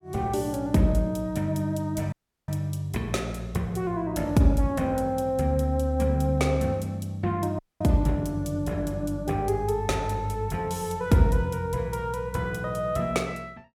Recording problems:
audio cutting out; at 2 s and at 7.5 s

